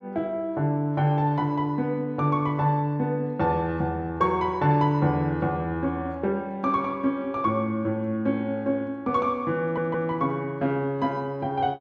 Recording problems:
stutter; at 9.5 s

